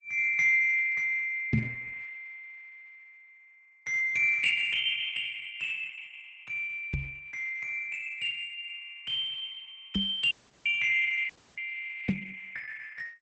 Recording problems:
lossy codec; Opus, log-spectral distance 4 dB, nothing above 8 kHz
microphone thump; 4 times, first at 1.5 s; peak +6 dB vs average level
dropout; at 10 s and at 11 s

